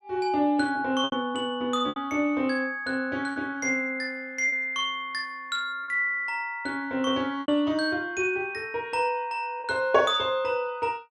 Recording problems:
packet loss; 4% of the sound replaced, filled with repeated pitch periods

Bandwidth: 12.5 kHz